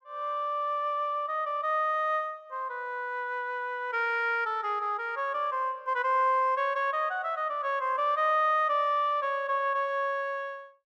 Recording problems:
none

